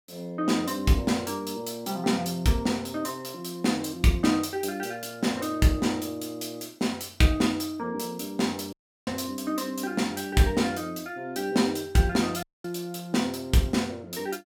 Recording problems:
dropout; at 8.5 s and at 12 s

